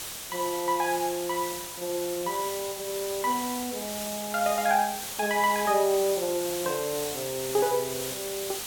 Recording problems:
background hiss; slope 0 dB per octave, SNR 6 dB

